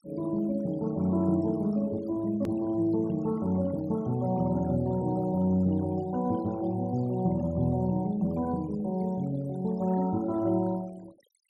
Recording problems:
denoising artefacts; signal-to-artefact ratio 24 dB
hard cut with a click; at 2.5 s

